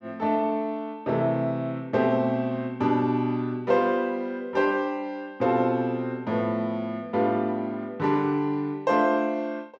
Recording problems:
none

